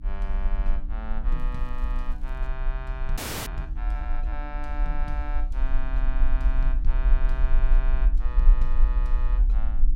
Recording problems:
hum; 60 Hz, harmonics up to 300 Hz, SNR 7 dB
low-frequency rumble; below 40 Hz, SNR -11 dB
crackle; from 1.5 to 2.5 s; loose cable, SNR 26 dB
audio freezing; at 3 s

